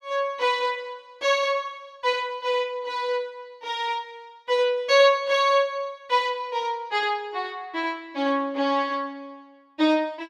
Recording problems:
none

